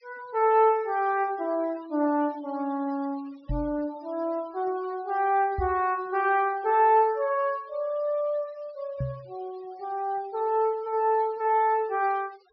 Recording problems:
treble cut off; nothing above 5.5 kHz
noise reduction artefacts; signal-to-artefact ratio 27 dB
microphone thump; at 3.5 s, at 5.5 s and at 9 s; peak -1 dB vs average level

